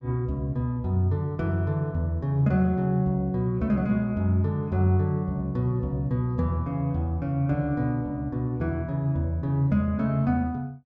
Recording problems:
none

